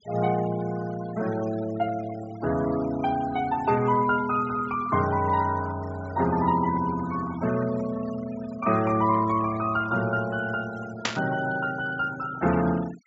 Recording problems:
treble cut off; nothing above 7.6 kHz
denoising artefacts; signal-to-artefact ratio 17 dB
static burst; at 11 s; peak +4 dB vs average level

